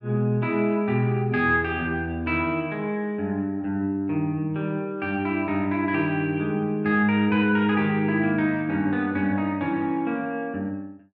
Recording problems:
none

